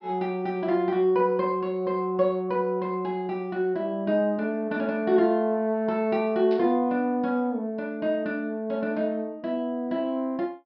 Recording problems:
low-pass filter; nothing above 5.5 kHz
burst of static; at 6.5 s; peak -15 dB vs average level

